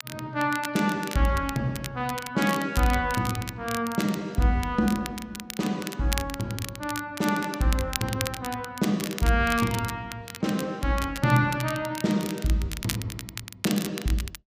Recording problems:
crackle; vinyl, SNR 10 dB

